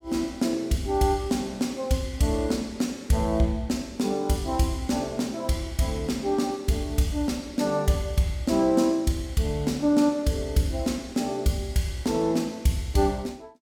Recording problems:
none

